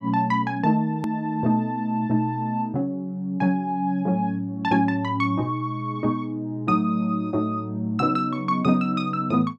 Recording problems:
edit click; at 1 s

